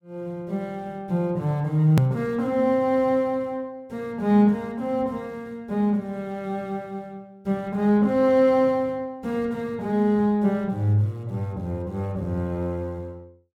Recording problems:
hard cut with a click; at 2 s

